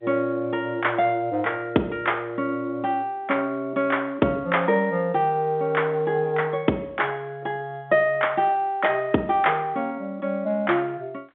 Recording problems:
telephone audio; 190 Hz to 3.6 kHz, G.711

